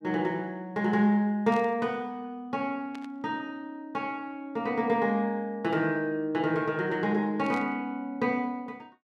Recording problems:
burst of static; at 1.5 s, at 3 s and at 7.5 s; peak -13 dB vs average level

